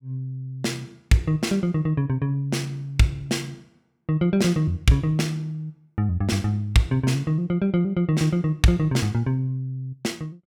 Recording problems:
none

